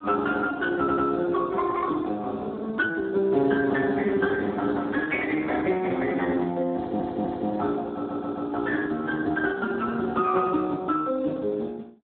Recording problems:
phone line; 220 Hz to 2.1 kHz, Speex
stutter; at 1 s, at 7 s and at 8 s

